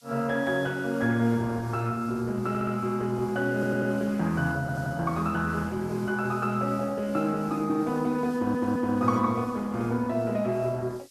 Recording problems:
codec artefacts; Opus, log-spectral distance 2 dB
hiss; SNR 25 dB
audio stuttering; 4 times, first at 2.5 s

